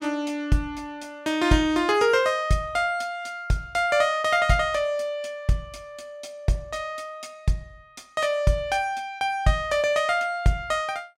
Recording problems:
none

